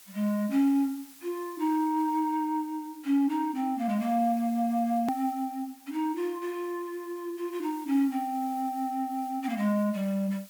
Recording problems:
background hiss; slope +2 dB per octave, SNR 22 dB
hard cut with a click; at 5 s

